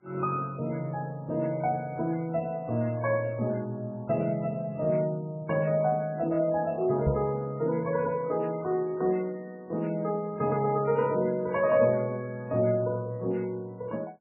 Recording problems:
lossy codec; MP3, log-spectral distance 2 dB
microphone thump; at 7 s; peak +3 dB vs average level

